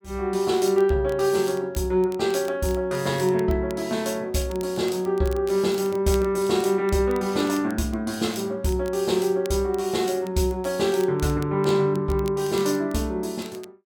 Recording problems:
crackling; vinyl, SNR 23 dB

